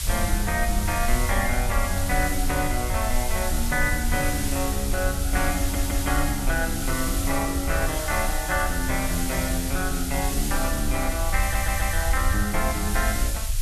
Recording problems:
background hiss; slope +3 dB per octave, SNR 4 dB
rumble; below 70 Hz, SNR 2 dB
stutter; at 5.5 s and at 11 s

